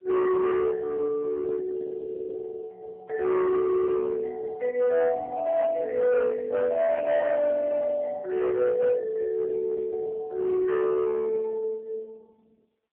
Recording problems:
phone line; 780 Hz to 2 kHz, AMR-NB
distorted audio; hard clipping, signal-to-distortion ratio 11 dB

